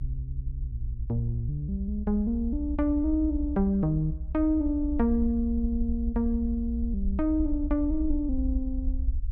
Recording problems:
rumble; below 66 Hz, SNR 6 dB

